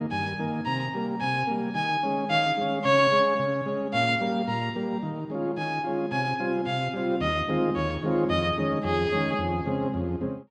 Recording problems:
none

